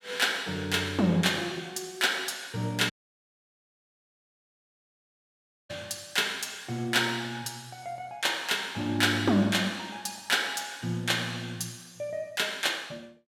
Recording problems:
audio cutting out; at 3 s for 3 s

